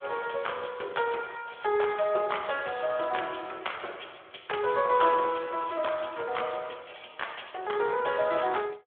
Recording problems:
telephone audio; 340 Hz to 3.4 kHz, Speex

